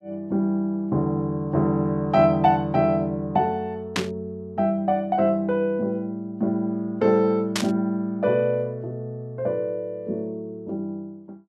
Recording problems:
static burst; at 4 s and at 7.5 s; peak +3 dB vs average level

